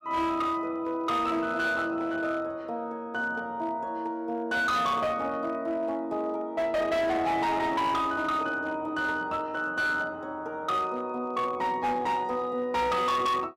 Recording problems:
distorted audio; hard clipping, signal-to-distortion ratio 10 dB

